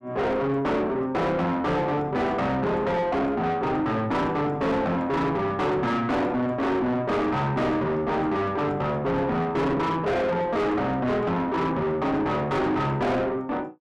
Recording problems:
distorted audio; soft clipping, signal-to-distortion ratio 5 dB

